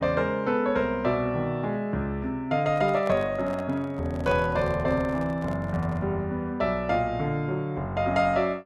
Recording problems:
handling noise; from 2.5 to 6 s; peak -7 dB vs average level

